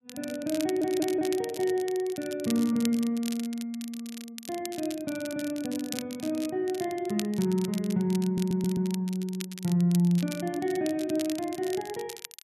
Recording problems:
crackle; vinyl, SNR 13 dB
audio stuttering; at 0.5 s and at 8.5 s

